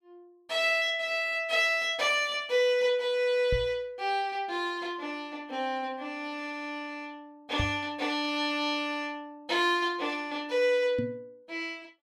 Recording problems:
knock on the microphone; at 3.5 s, at 7.5 s and at 11 s; peak 0 dB vs average level

